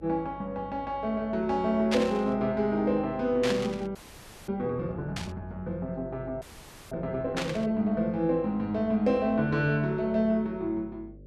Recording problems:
hum; 50 Hz, harmonics up to 600 Hz, SNR 21 dB
burst of static; 4 times, first at 2 s; peak +2 dB vs average level
audio freezing; at 4 s for 0.5 s and at 6.5 s

